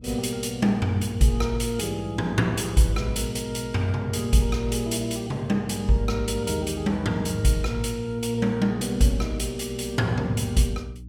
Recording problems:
hum; 60 Hz, harmonics up to 300 Hz, SNR 18 dB

